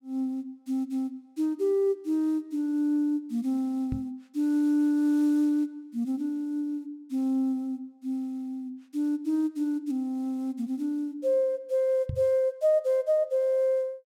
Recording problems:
knock on the microphone; at 4 s and at 12 s; peak -1 dB vs average level

